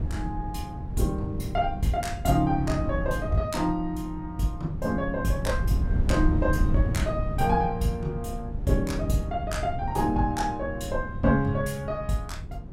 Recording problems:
wind noise; below 120 Hz, SNR 4 dB

